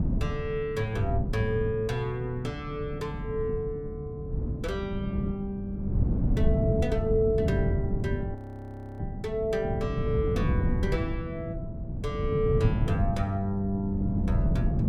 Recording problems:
wind noise; below 180 Hz, SNR 0 dB
frozen audio; at 8.5 s for 0.5 s

